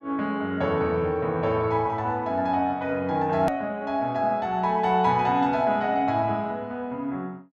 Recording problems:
hard cut with a click; at 3.5 s

